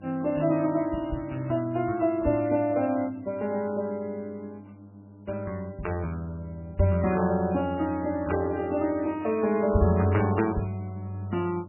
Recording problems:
lossy compression; MP3, log-spectral distance 2 dB, nothing above 2.7 kHz
electrical hum; 50 Hz, harmonics up to 900 Hz, SNR 22 dB

